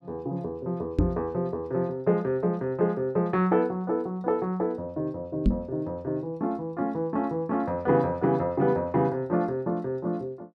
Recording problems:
microphone bump; at 1 s and at 5.5 s; peak +8 dB vs average level

